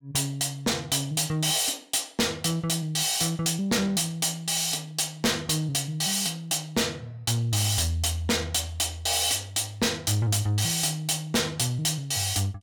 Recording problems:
distortion; soft clipping, signal-to-distortion ratio 6 dB

